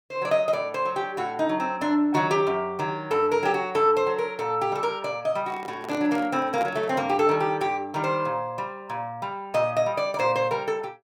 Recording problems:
handling noise; from 5.5 to 7 s; peak -5 dB vs average level

